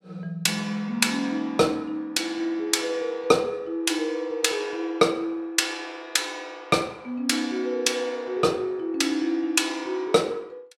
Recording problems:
none

